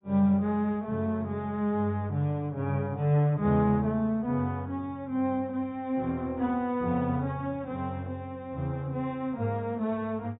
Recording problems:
treble missing; nothing above 4 kHz

